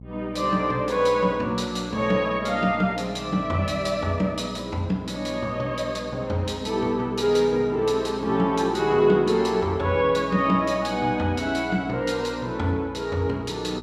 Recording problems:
hum; 60 Hz, harmonics up to 540 Hz, SNR 18 dB

